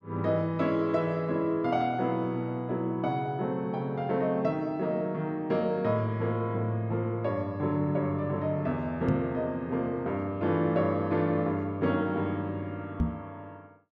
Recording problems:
microphone bump; at 9 s and at 13 s; peak +5 dB vs average level

